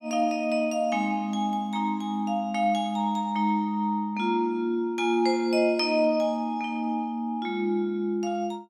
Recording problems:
none

